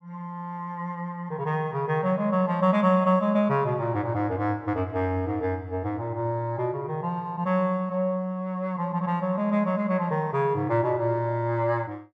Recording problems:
none

